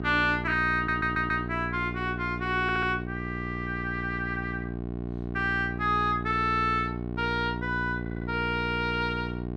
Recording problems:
electrical hum; 60 Hz, harmonics up to 1.1 kHz, SNR 6 dB
audio stuttering; at 1 s, at 2.5 s and at 8 s

